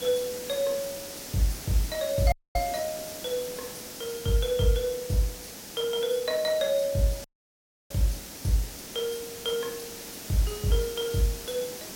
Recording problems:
background hiss; SNR 9 dB
dropout; at 2.5 s and at 7 s for 0.5 s

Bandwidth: 16.5 kHz